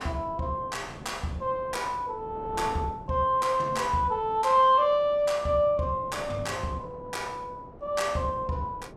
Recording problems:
wind on the microphone; below 560 Hz, SNR 19 dB

